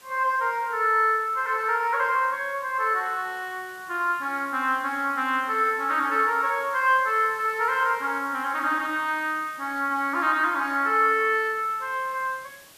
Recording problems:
background hiss; slope -1 dB per octave, SNR 24 dB

